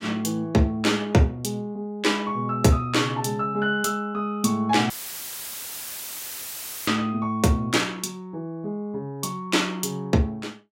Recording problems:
audio cutting out; at 5 s for 2 s; filled with static

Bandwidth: 16 kHz